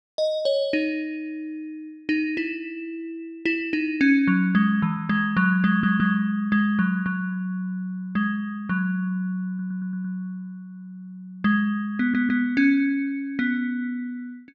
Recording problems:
stutter; at 5.5 s, at 9.5 s and at 12 s

